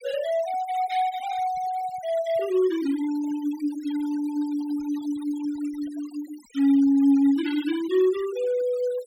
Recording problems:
denoising artefacts; signal-to-artefact ratio 19 dB

